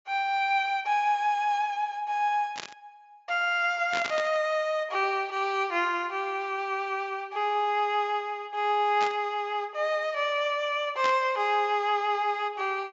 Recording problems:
low-pass filter; nothing above 7.4 kHz
static burst; 4 times, first at 2.5 s; peak -2 dB vs average level

